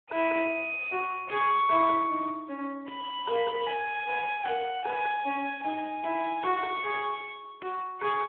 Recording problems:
telephone audio; 280 Hz to 3.3 kHz, Speex

